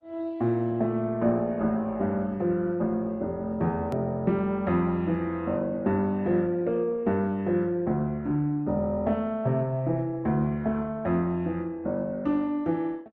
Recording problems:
codec artefacts; Opus, log-spectral distance 2 dB, nothing above 13.1 kHz
hard cut with a click; at 4 s

